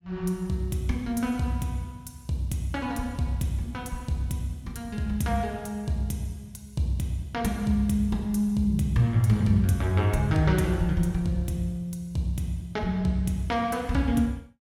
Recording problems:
none

